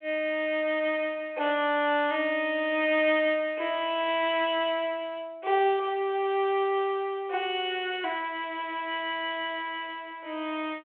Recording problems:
telephone audio; 320 Hz to 3.5 kHz, G.726

